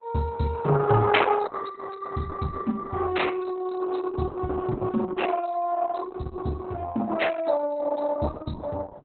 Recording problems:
codec artefacts; Opus, then Opus, log-spectral distance 4 dB, nothing above 4.1 kHz

